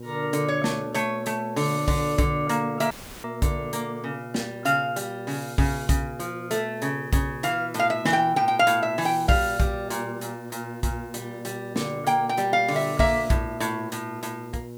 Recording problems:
hum; 60 Hz, harmonics up to 960 Hz, SNR 14 dB
background hiss; slope +2 dB per octave, SNR 30 dB
dropout; at 3 s

